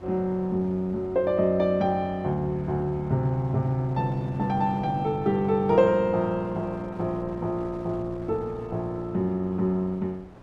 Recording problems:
wind on the microphone; below 610 Hz, SNR 19 dB

